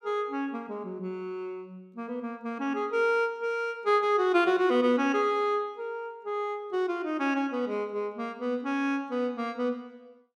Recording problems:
none

